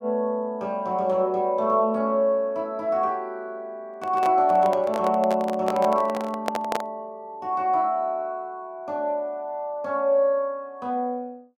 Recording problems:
microphone handling noise; from 4 to 7 s; peak +2 dB vs average level

